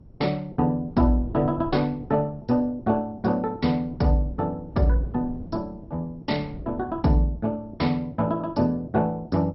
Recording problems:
codec artefacts; MP2, log-spectral distance 2 dB, nothing above 5.5 kHz
wind noise; below 210 Hz, SNR 17 dB

